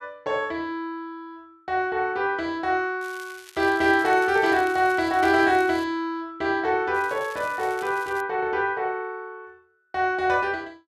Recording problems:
crackle; from 3 to 6 s and from 7 to 8 s; loose cable, SNR 22 dB

